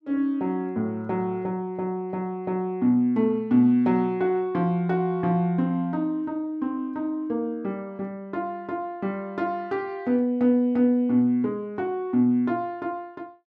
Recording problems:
none

